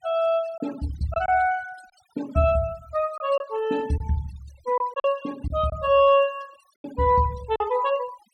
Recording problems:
noise reduction artefacts; signal-to-artefact ratio 22 dB
packet loss; 5% of the sound replaced, filled with silence

